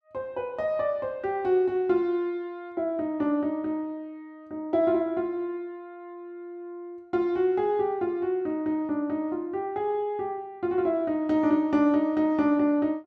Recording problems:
none

